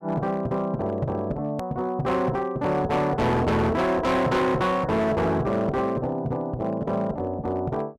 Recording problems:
distortion; hard clipping, signal-to-distortion ratio 7 dB
edit click; at 1.5 s

